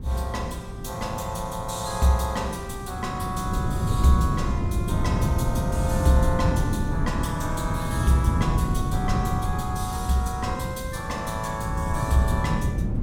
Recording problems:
wind on the microphone; below 170 Hz, SNR 0 dB

